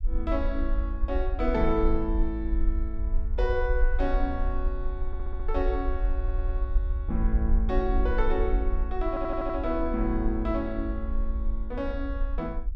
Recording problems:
rumble; below 50 Hz, SNR 0 dB
stutter; at 5 s, at 6 s and at 9 s

